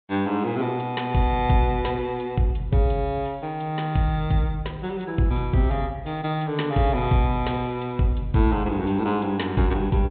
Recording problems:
treble cut off; nothing above 4 kHz

